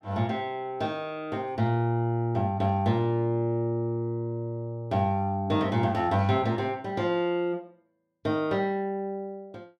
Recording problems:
none

